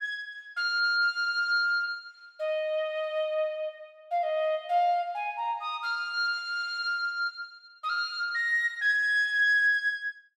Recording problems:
none

